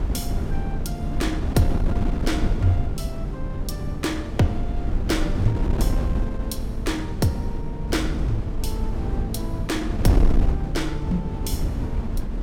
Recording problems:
wind on the microphone; below 100 Hz, SNR -1 dB

